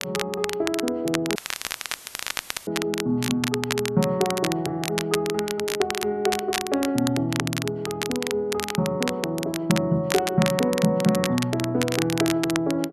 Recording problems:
crackling; vinyl, SNR 5 dB
dropout; at 1.5 s for 1.5 s; filled with static

